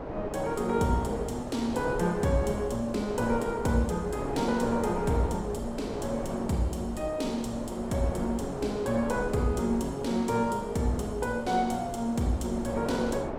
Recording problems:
wind on the microphone; below 710 Hz, SNR 7 dB

